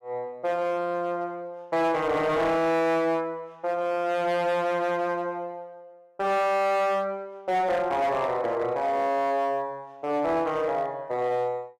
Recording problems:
distorted audio; hard clipping, signal-to-distortion ratio 11 dB

